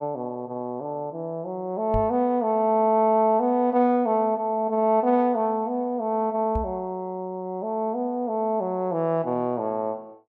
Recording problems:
microphone bump; at 2 s and at 6.5 s; peak -2 dB vs average level

